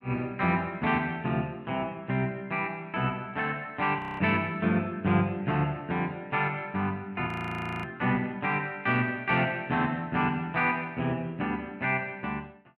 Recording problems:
frozen audio; at 4 s and at 7.5 s for 0.5 s

